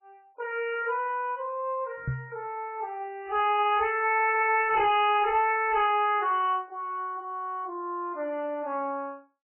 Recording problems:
lossy codec; MP3, then MP3, log-spectral distance 2 dB, nothing above 2.5 kHz
distortion; soft clipping, signal-to-distortion ratio 10 dB
microphone thump; at 2 s; peak 0 dB vs average level

